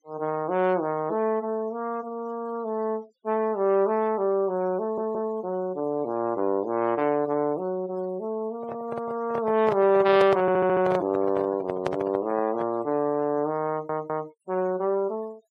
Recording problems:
noise reduction artefacts; signal-to-artefact ratio 24 dB
audio stuttering; at 5 s, at 10 s and at 14 s
microphone handling noise; from 8.5 to 13 s; peak +1 dB vs average level

